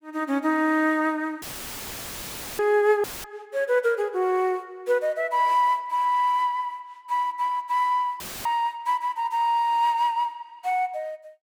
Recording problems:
audio cutting out; at 1.5 s for 1 s, at 3 s and at 8 s; filled with static

